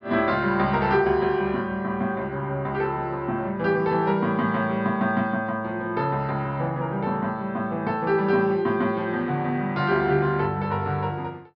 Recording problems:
low-pass filter; nothing above 5.5 kHz

